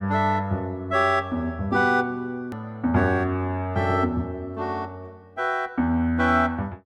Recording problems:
click at an edit; at 2.5 s

